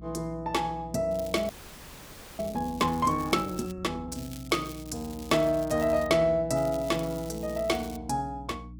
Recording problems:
electrical hum; 60 Hz, harmonics up to 300 Hz, SNR 17 dB
crackle; from 1 to 3.5 s, from 4 to 6 s and from 6.5 to 8 s; loose cable, SNR 19 dB
audio freezing; at 1.5 s for 1 s

